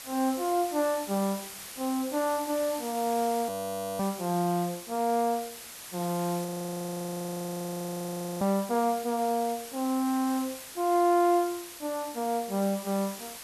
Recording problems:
background hiss; slope 0 dB per octave, SNR 11 dB
audio freezing; at 3.5 s for 0.5 s and at 6.5 s for 2 s

